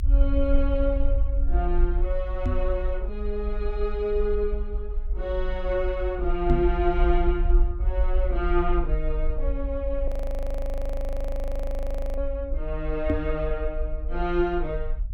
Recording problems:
low-frequency rumble; below 52 Hz, strongest tone 24 Hz, SNR 0 dB
microphone thump; at 2.5 s, at 6.5 s and at 13 s; peak +8 dB vs average level
audio freezing; at 10 s for 2 s

